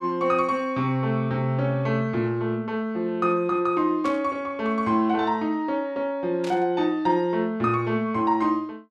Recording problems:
static burst; at 4 s and at 6.5 s; peak -10 dB vs average level

